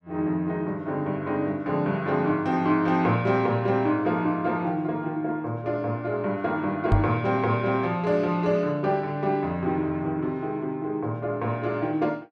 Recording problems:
knock on the microphone; at 7 s; peak +7 dB vs average level

